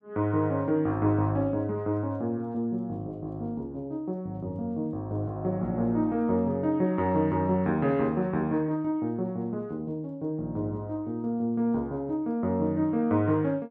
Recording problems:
none

